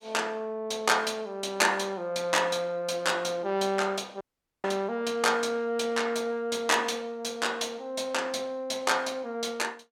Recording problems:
dropout; at 4 s

